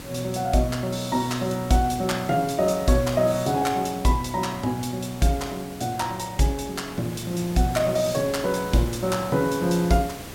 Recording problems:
hiss; slope -4 dB per octave, SNR 14 dB

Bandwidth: 16.5 kHz